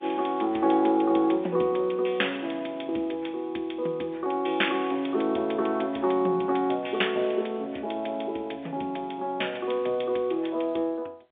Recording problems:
phone line; 280 Hz to 3.6 kHz, G.711

